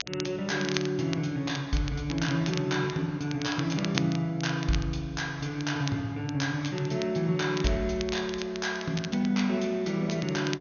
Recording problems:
low-pass filter; nothing above 6.6 kHz
hum; 60 Hz, harmonics up to 720 Hz, SNR 28 dB
crackle; vinyl, SNR 11 dB

